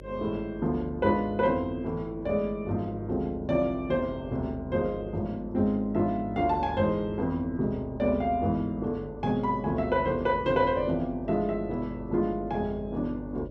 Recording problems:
hum; 50 Hz, harmonics up to 600 Hz, SNR 15 dB

